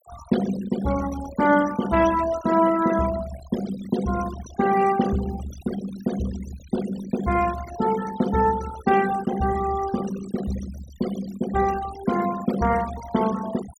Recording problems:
noise reduction artefacts; signal-to-artefact ratio 13 dB

